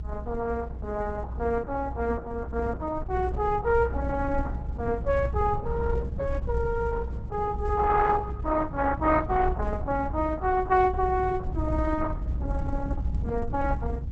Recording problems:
lossy compression; Opus, log-spectral distance 3 dB
rumble; below 96 Hz, SNR 6 dB

